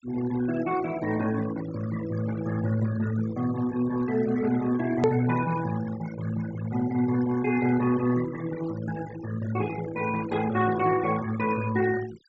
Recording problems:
treble missing; nothing above 7.8 kHz
noise reduction artefacts; signal-to-artefact ratio 14 dB
click at an edit; at 5 s

